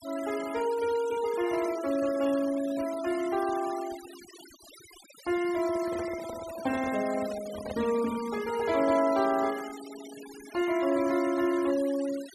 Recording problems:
noise reduction artefacts; signal-to-artefact ratio 16 dB
microphone handling noise; from 5.5 to 8.5 s; peak -5 dB vs average level

